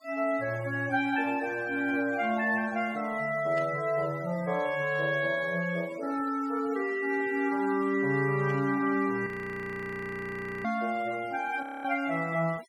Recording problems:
noise reduction artefacts; signal-to-artefact ratio 20 dB
static burst; at 3.5 s and at 8.5 s; peak -17 dB vs average level
audio freezing; at 9.5 s for 1.5 s and at 12 s

